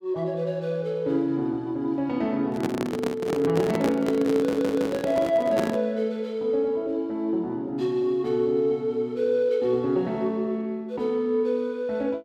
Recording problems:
handling noise; from 2.5 to 6 s; peak +3 dB vs average level
audio stuttering; at 4.5 s

